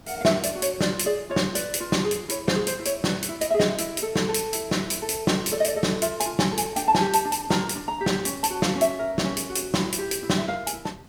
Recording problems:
hiss; slope -5 dB per octave, SNR 23 dB

